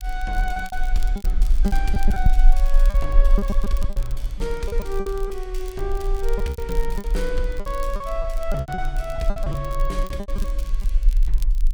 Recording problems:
low-frequency rumble; below 38 Hz, strongest tone 22 Hz, SNR -4 dB
crackling; vinyl, SNR 17 dB
packet loss; 13% of the sound replaced, filled with repeated pitch periods

